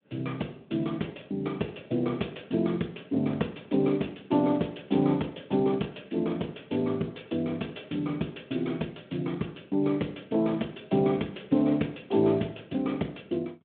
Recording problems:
telephone audio; 150 Hz to 3.5 kHz, Speex

